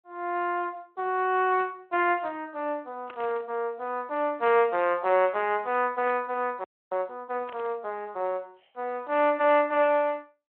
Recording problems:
phone line; 320 Hz to 3.1 kHz, Speex
burst of static; 4 times, first at 3 s; peak -11 dB vs average level
audio freezing; at 6.5 s

